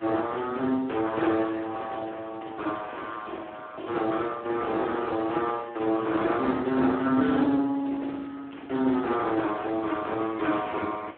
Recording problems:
phone line; 220 Hz to 3.7 kHz, Speex
background hiss; SNR 24 dB

